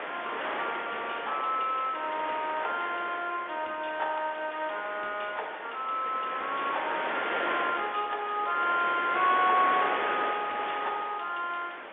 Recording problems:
phone line; 300 Hz to 3.5 kHz, G.711
wind on the microphone; below 2.1 kHz, SNR 5 dB

